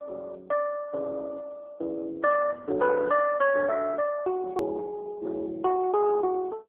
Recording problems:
telephone audio; 280 Hz to 2.8 kHz, AMR-NB
edit click; at 4.5 s

